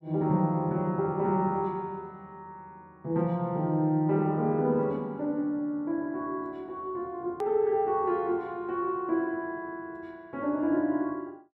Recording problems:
hard cut with a click; at 7.5 s

